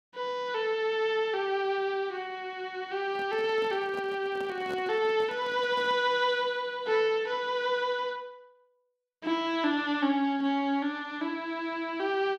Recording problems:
handling noise; from 3 to 6 s; peak -8 dB vs average level

